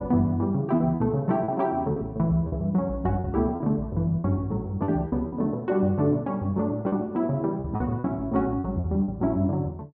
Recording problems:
lost packets; 7% of the sound replaced, filled with repeated pitch periods

